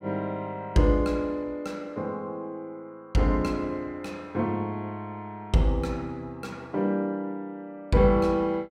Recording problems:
none

